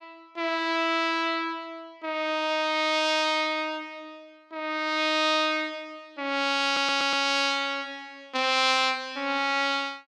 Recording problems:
audio stuttering; at 6.5 s

